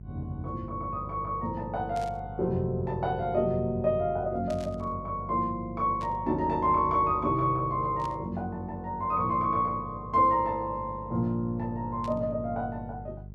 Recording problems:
hum; 50 Hz, harmonics up to 450 Hz, SNR 14 dB
static burst; 5 times, first at 2 s; peak -14 dB vs average level

